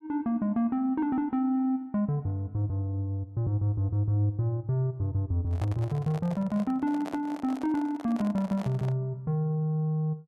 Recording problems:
microphone handling noise; from 5.5 to 9 s; peak -7 dB vs average level

